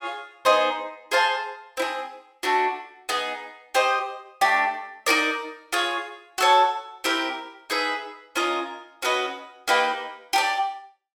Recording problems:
none

